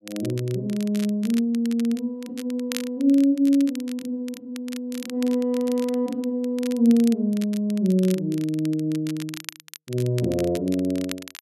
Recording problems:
crackling; vinyl, SNR 17 dB

